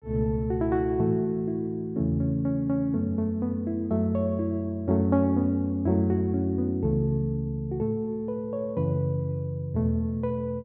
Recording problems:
none

